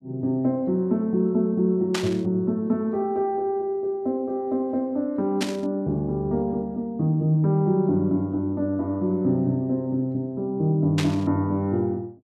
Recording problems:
static burst; at 2 s, at 5.5 s and at 11 s; peak 0 dB vs average level

